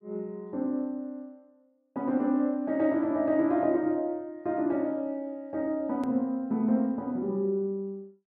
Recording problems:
click at an edit; at 6 s

